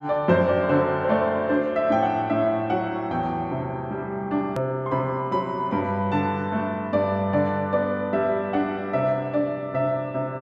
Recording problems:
hard cut with a click; at 4.5 s

